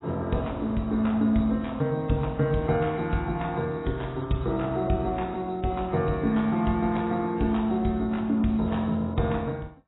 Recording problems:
lossy codec; AAC, log-spectral distance 4 dB, nothing above 3.9 kHz

